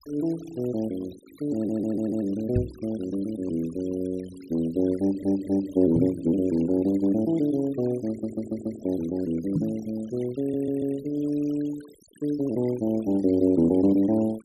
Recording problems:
denoising artefacts; signal-to-artefact ratio 24 dB
audio stuttering; 4 times, first at 1.5 s
microphone thump; at 2.5 s, at 6 s and at 9.5 s; peak +4 dB vs average level

